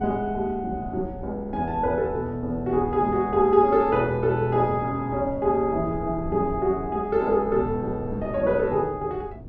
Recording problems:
wind noise; below 230 Hz, SNR 15 dB

